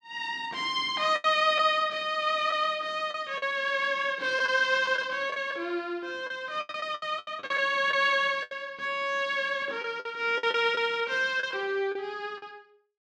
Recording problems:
packet loss; 8% of the sound replaced, filled with the last packet

